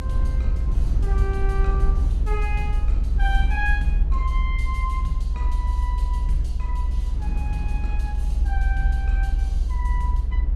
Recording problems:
rumble; below 62 Hz, strongest tone 40 Hz, SNR -9 dB
wind noise; below 160 Hz, SNR 8 dB

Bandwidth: 15 kHz